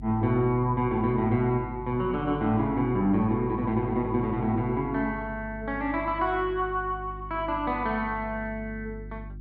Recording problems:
electrical hum; 50 Hz, harmonics up to 350 Hz, SNR 14 dB

